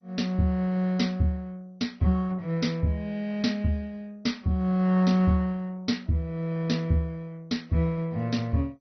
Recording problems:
lossy codec; MP2, log-spectral distance 2 dB, nothing above 6 kHz

